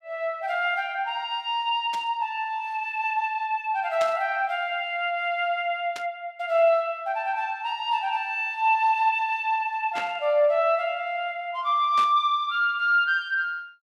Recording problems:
burst of static; 5 times, first at 2 s; peak -6 dB vs average level

